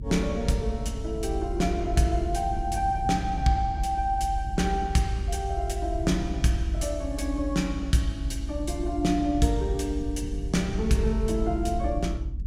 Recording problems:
low-frequency rumble; below 64 Hz, strongest tone 44 Hz, SNR 5 dB

